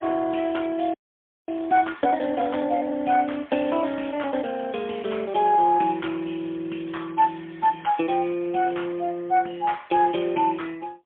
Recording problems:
phone line; 220 Hz to 3.4 kHz, AMR-NB, then MP3
frozen audio; at 1 s for 0.5 s

